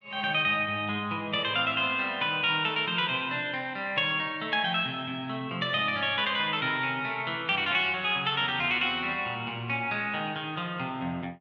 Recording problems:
none

